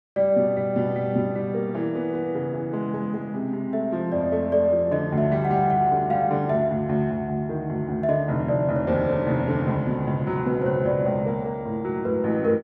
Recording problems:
none

